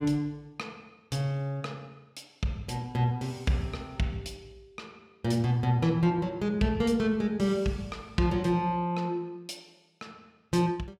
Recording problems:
none

